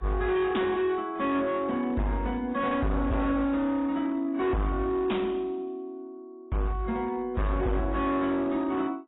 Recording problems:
lossy compression; AAC, log-spectral distance 2 dB, nothing above 3.8 kHz
distorted audio; hard clipping, signal-to-distortion ratio 8 dB

